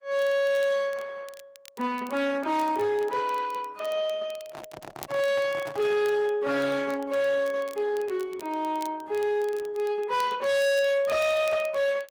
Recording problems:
lossy compression; Opus, log-spectral distance 3 dB, nothing above 19.5 kHz
distortion; hard clipping, signal-to-distortion ratio 7 dB
crackling; vinyl, SNR 23 dB
microphone handling noise; from 4.5 to 6 s; peak -9 dB vs average level

